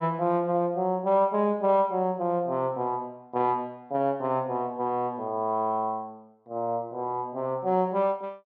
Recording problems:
none

